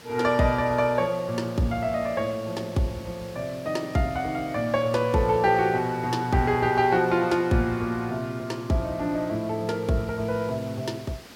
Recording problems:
background hiss; slope -3 dB per octave, SNR 20 dB

